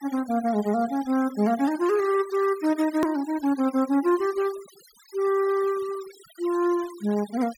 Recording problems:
noise reduction artefacts; signal-to-artefact ratio 19 dB
click at an edit; at 3 s

